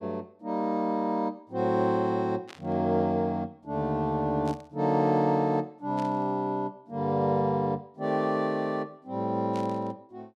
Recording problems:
static burst; 4 times, first at 2.5 s; peak -13 dB vs average level

